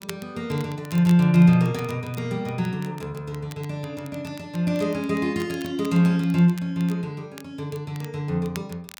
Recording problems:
crackling; vinyl, SNR 23 dB

